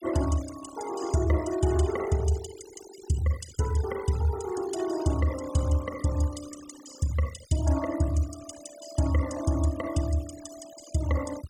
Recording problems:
noise reduction artefacts; signal-to-artefact ratio 16 dB

